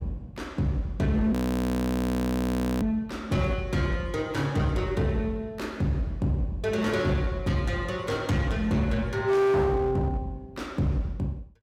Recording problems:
distortion; hard clipping, uneven, signal-to-distortion ratio 11 dB
audio freezing; at 1.5 s for 1.5 s

